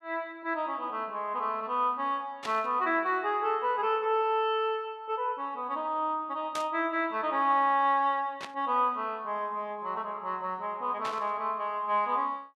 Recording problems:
static burst; 4 times, first at 2.5 s; peak -4 dB vs average level

